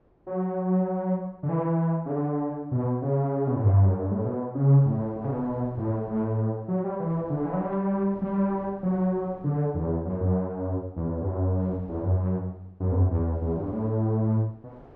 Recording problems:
wind noise; below 550 Hz, SNR 25 dB

